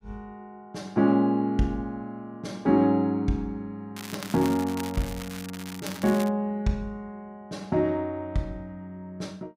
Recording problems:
crackle; from 4 to 6.5 s; loose cable, SNR 13 dB

